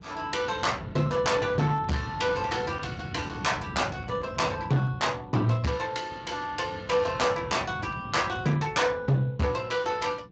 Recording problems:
codec artefacts; Speex, log-spectral distance 4 dB, nothing above 7.3 kHz
distortion; hard clipping, uneven, signal-to-distortion ratio 10 dB
wind on the microphone; below 280 Hz, SNR 13 dB

